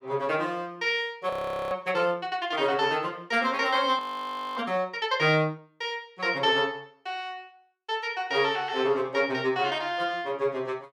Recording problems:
frozen audio; at 1.5 s and at 4 s for 0.5 s

